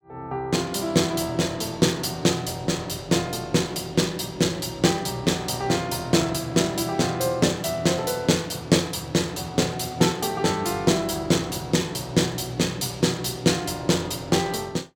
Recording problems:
none

